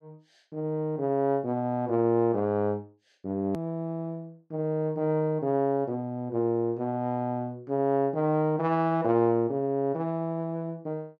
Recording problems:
hard cut with a click; at 3.5 s

